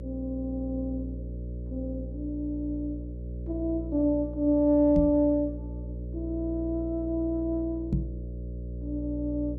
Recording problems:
electrical hum; 60 Hz, harmonics up to 600 Hz, SNR 9 dB
microphone bump; at 5 s and at 8 s; peak +4 dB vs average level

